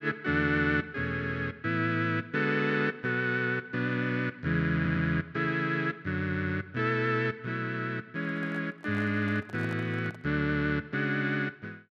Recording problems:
audio stuttering; at 5 s
microphone handling noise; from 8 to 10 s; peak -10 dB vs average level

